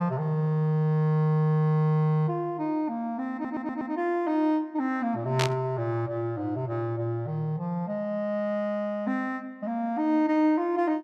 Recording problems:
stutter; at 3.5 s
static burst; at 5.5 s; peak +2 dB vs average level

